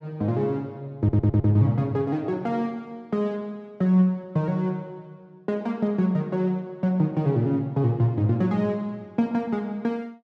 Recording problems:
stutter; at 1 s

